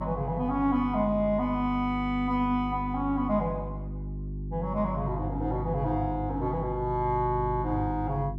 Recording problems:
hum; 50 Hz, harmonics up to 400 Hz, SNR 7 dB

